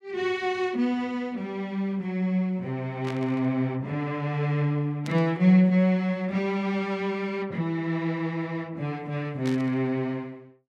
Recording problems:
burst of static; at 3 s, at 5 s and at 9.5 s; peak -8 dB vs average level

